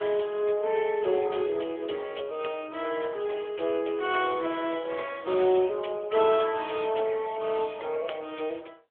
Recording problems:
telephone audio; 340 Hz to 3.4 kHz, AMR-NB

